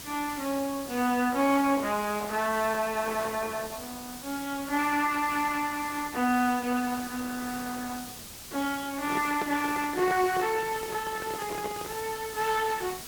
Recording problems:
lossy codec; Opus, log-spectral distance 3 dB
hiss; slope -1 dB per octave, SNR 12 dB
handling noise; from 9 to 12 s; peak -3 dB vs average level

